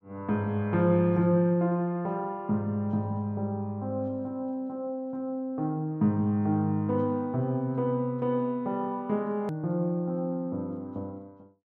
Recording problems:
click at an edit; at 9.5 s

